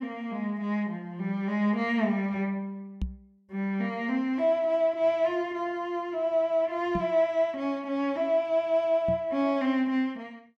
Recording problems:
microphone bump; at 3 s, at 7 s and at 9 s; peak 0 dB vs average level

